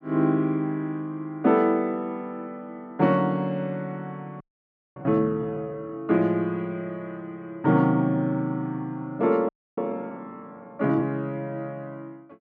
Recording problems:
audio freezing; at 4.5 s for 0.5 s and at 9.5 s

